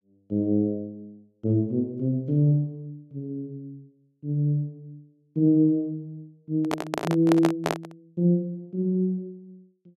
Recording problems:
handling noise; from 6.5 to 8 s; peak +4 dB vs average level

